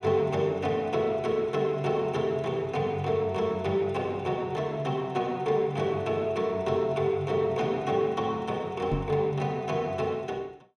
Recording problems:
microphone thump; at 9 s; peak +2 dB vs average level

